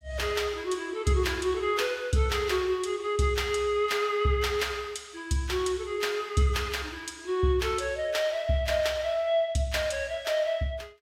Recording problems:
none

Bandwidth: 16 kHz